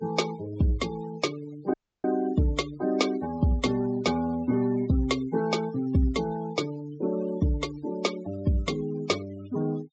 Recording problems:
low-pass filter; nothing above 8 kHz
noise reduction artefacts; signal-to-artefact ratio 16 dB
dropout; at 1.5 s

